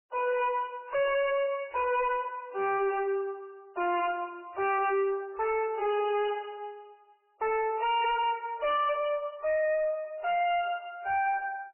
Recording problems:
lossy compression; MP3, log-spectral distance 3 dB, nothing above 2.5 kHz
distorted audio; hard clipping, uneven, signal-to-distortion ratio 6 dB

